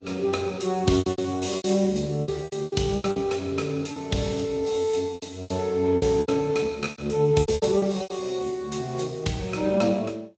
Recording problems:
codec artefacts; Speex, then Vorbis, log-spectral distance 5 dB, nothing above 7.8 kHz
lost packets; 14% of the sound replaced, filled with repeated pitch periods

